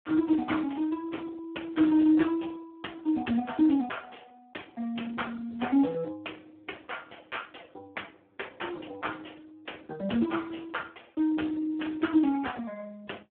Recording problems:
phone line; 220 Hz to 3.4 kHz, Speex

